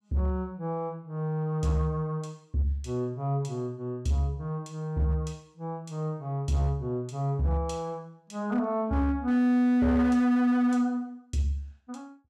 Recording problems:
distorted audio; hard clipping, signal-to-distortion ratio 11 dB

